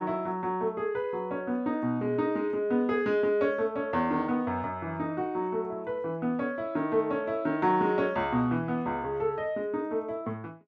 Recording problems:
none

